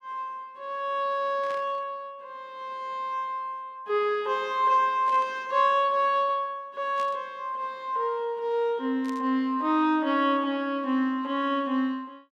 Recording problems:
static burst; 4 times, first at 1.5 s; peak -13 dB vs average level

